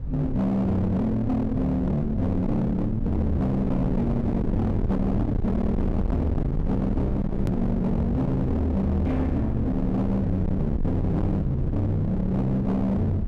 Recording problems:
distortion; hard clipping, signal-to-distortion ratio 6 dB
rumble; below 190 Hz, SNR 5 dB
edit click; at 7.5 s

